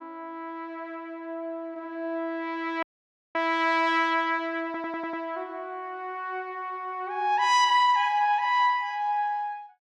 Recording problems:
dropout; at 3 s for 0.5 s
audio stuttering; at 4.5 s

